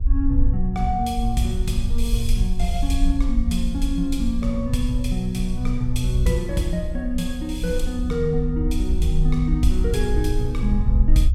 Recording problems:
electrical hum; 60 Hz, harmonics up to 780 Hz, SNR 24 dB
rumble; below 60 Hz, SNR 1 dB

